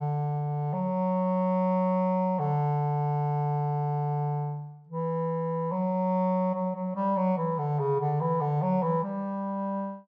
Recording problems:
none

